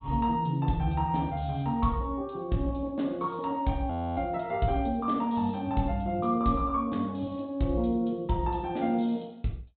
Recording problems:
treble missing; nothing above 4 kHz
audio freezing; at 4 s

